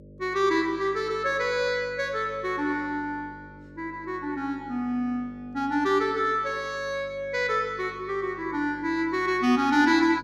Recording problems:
hum; 50 Hz, harmonics up to 600 Hz, SNR 22 dB

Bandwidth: 15 kHz